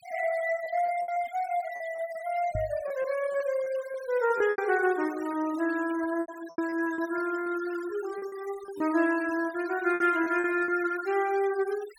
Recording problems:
noise reduction artefacts; signal-to-artefact ratio 19 dB
packet loss; 8% of the sound replaced, filled with repeated pitch periods
knock on the microphone; at 2.5 s; peak -2 dB vs average level

